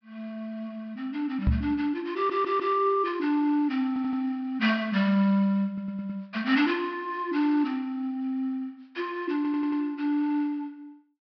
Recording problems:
low-pass filter; nothing above 5.5 kHz
knock on the microphone; at 1.5 s; peak +6 dB vs average level
audio stuttering; 4 times, first at 2 s

